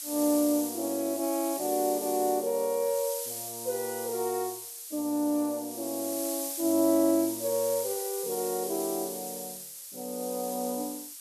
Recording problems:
hiss; SNR 6 dB

